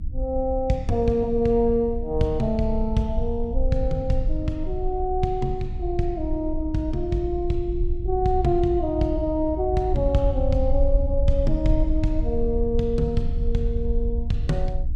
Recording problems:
hum; 60 Hz, harmonics up to 300 Hz, SNR 20 dB
low-frequency rumble; below 60 Hz, strongest tone 22 Hz, SNR 4 dB

